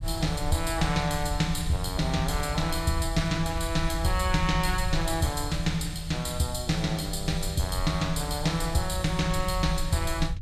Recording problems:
rumble; below 76 Hz, SNR 7 dB

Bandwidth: 14.5 kHz